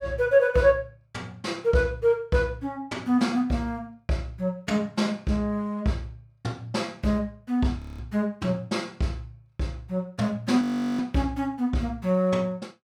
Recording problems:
audio freezing; at 8 s and at 11 s

